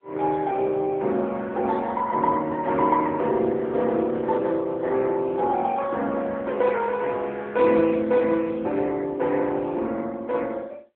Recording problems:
telephone audio; 240 Hz to 3.5 kHz, AMR-NB

